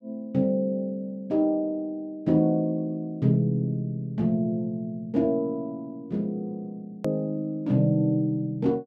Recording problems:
edit click; at 7 s

